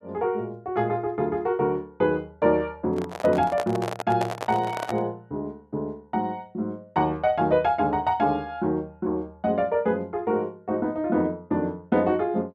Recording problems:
microphone handling noise; from 3 to 5 s; peak 0 dB vs average level

